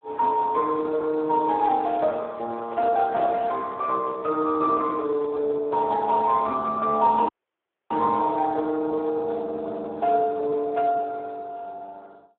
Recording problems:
telephone audio; 280 Hz to 2.8 kHz, Speex
handling noise; from 2 to 5.5 s; peak -12 dB vs average level
dropout; at 7.5 s for 0.5 s

